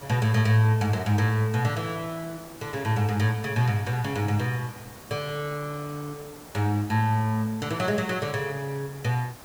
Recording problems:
hiss; SNR 18 dB

